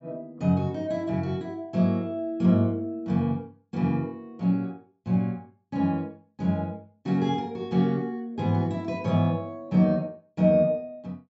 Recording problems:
treble cut off; nothing above 8 kHz

